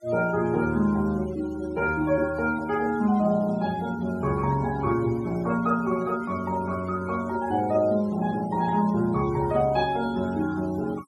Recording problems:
noise reduction artefacts; signal-to-artefact ratio 22 dB

